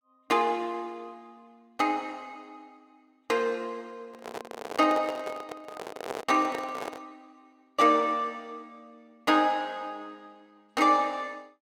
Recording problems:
handling noise; from 4 to 7 s; peak -3 dB vs average level

